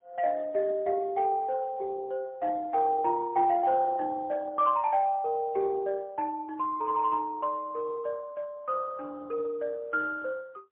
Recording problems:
phone line; 320 Hz to 2.2 kHz, AMR-NB, then MP3

